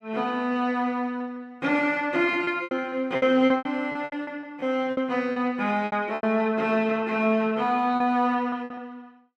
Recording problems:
packet loss; 11% of the sound replaced, filled with repeated pitch periods

